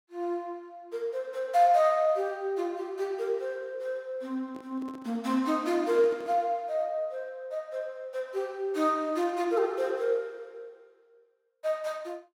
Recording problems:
microphone handling noise; from 4.5 to 6.5 s; peak -12 dB vs average level

